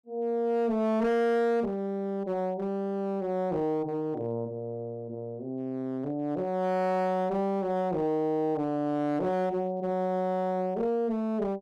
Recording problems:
distorted audio; hard clipping, uneven, signal-to-distortion ratio 11 dB

